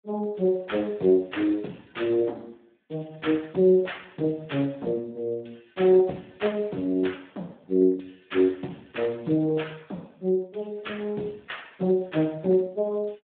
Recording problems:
telephone audio; 150 Hz to 3.6 kHz, Speex

